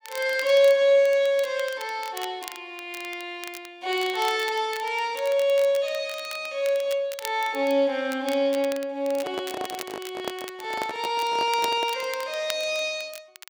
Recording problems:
crackle; vinyl, SNR 16 dB
handling noise; from 9 to 12 s; peak -2 dB vs average level

